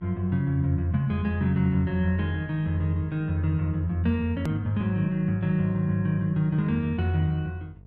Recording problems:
electrical hum; 50 Hz, harmonics up to 500 Hz, SNR 22 dB
edit click; at 4.5 s

